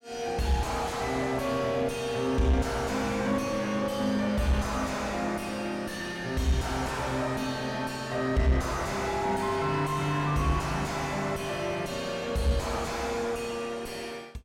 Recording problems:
distortion; soft clipping, signal-to-distortion ratio 3 dB

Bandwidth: 16 kHz